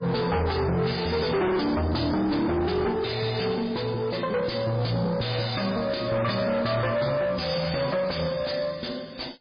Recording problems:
lossy compression; MP3, log-spectral distance 8 dB
distortion; soft clipping, signal-to-distortion ratio 6 dB

